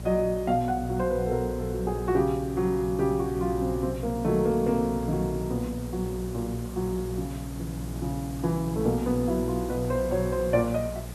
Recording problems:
hum; 60 Hz, harmonics up to 660 Hz, SNR 9 dB
background hiss; SNR 18 dB

